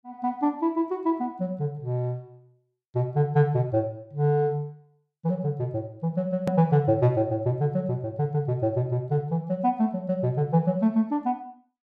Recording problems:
click at an edit; at 6.5 s

